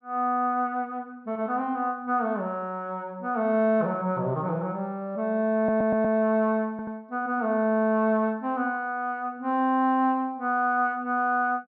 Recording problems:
stutter; at 5.5 s and at 6.5 s

